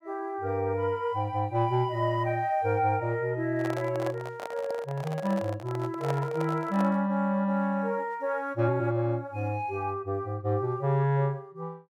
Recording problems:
microphone handling noise; from 3.5 to 7 s; peak -2 dB vs average level

